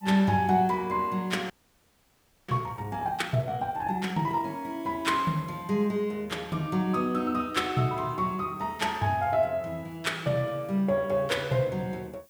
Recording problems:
background hiss; slope +1 dB per octave, SNR 29 dB
audio freezing; at 1.5 s for 1 s

